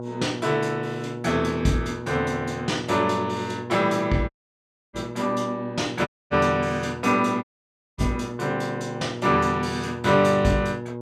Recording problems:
electrical hum; 60 Hz, harmonics up to 1.1 kHz, SNR 10 dB
dropout; at 4.5 s for 0.5 s, at 6 s and at 7.5 s for 0.5 s

